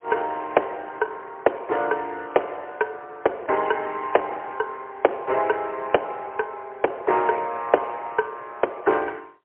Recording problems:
telephone audio; 340 Hz to 3.1 kHz, AMR-NB, then MP3

